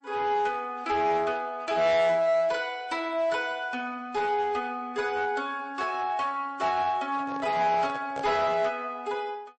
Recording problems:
lossy compression; MP3, log-spectral distance 2 dB, nothing above 8.2 kHz
distorted audio; hard clipping, uneven, signal-to-distortion ratio 10 dB
microphone handling noise; from 7 to 8.5 s; peak -6 dB vs average level

